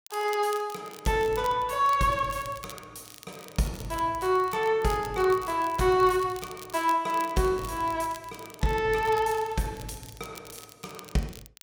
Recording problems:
crackling; vinyl, SNR 20 dB

